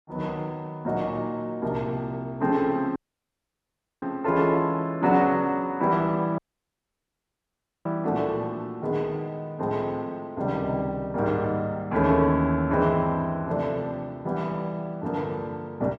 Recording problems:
dropout; at 3 s for 1 s and at 6.5 s for 1.5 s

